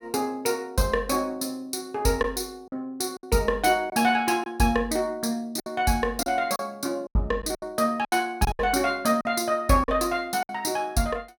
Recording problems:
packet loss; 6% of the sound replaced, filled with silence

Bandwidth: 17 kHz